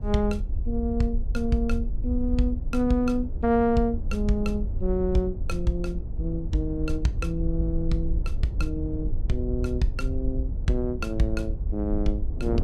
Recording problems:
low-frequency rumble; below 64 Hz, SNR 4 dB
wind noise; below 270 Hz, SNR 14 dB

